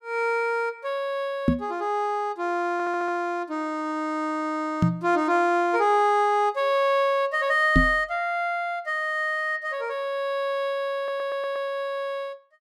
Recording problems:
microphone thump; at 1.5 s, at 5 s and at 8 s; peak +8 dB vs average level
stutter; at 2.5 s and at 11 s

